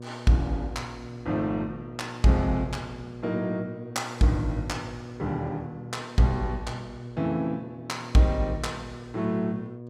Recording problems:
electrical hum; 60 Hz, harmonics up to 720 Hz, SNR 13 dB

